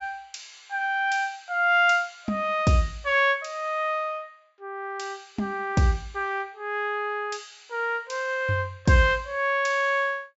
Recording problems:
treble missing; nothing above 8 kHz

